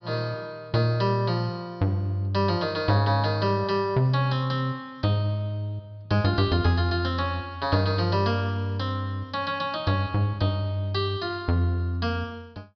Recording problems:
treble missing; nothing above 5.5 kHz

